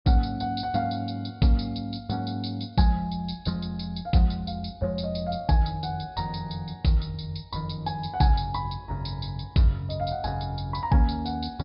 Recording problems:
low-pass filter; nothing above 5.2 kHz

